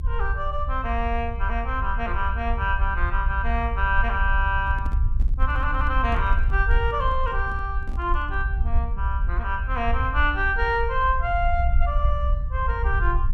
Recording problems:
low-frequency rumble; below 62 Hz, SNR 1 dB
microphone handling noise; from 4.5 to 8.5 s; peak -9 dB vs average level

